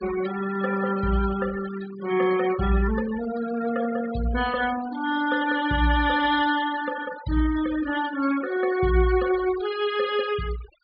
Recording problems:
low-pass filter; nothing above 4.9 kHz
noise reduction artefacts; signal-to-artefact ratio 13 dB

